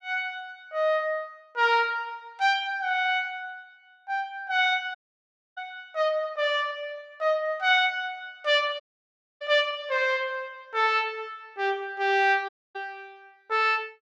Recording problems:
audio cutting out; at 5 s for 0.5 s, at 9 s for 0.5 s and at 12 s

